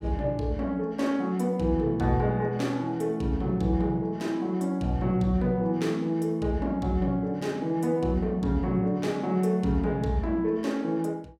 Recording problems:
none

